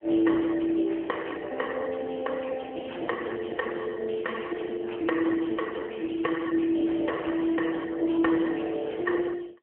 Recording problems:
phone line; 260 Hz to 3.3 kHz, AMR-NB

